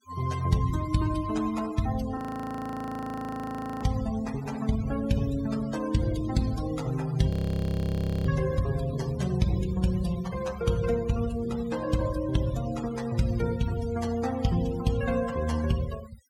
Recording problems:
noise reduction artefacts; signal-to-artefact ratio 16 dB
frozen audio; at 2 s for 1.5 s and at 7.5 s for 1 s

